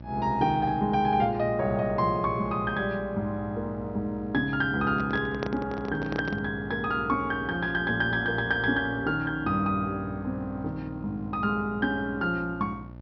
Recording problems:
low-pass filter; nothing above 5.8 kHz
electrical hum; 60 Hz, harmonics up to 1.2 kHz, SNR 16 dB
handling noise; from 5 to 6.5 s; peak +1 dB vs average level

